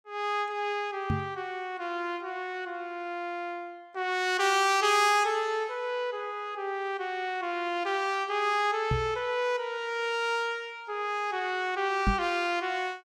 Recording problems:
knock on the microphone; at 1 s, at 9 s and at 12 s; peak +4 dB vs average level

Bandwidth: 16.5 kHz